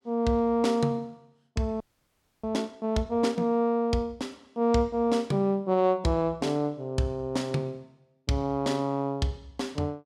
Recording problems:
audio freezing; at 2 s for 0.5 s

